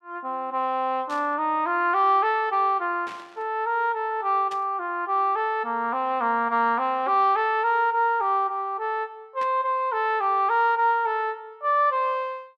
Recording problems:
burst of static; 4 times, first at 1 s; peak -13 dB vs average level

